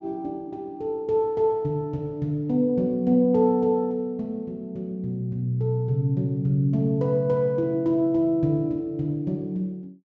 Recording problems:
low-pass filter; nothing above 8 kHz

